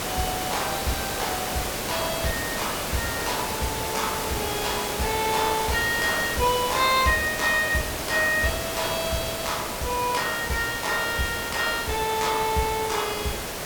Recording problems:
background hiss; slope -3 dB per octave, SNR 3 dB

